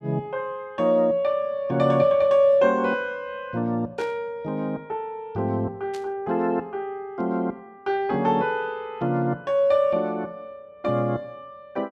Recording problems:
static burst; at 4 s and at 6 s; peak -14 dB vs average level

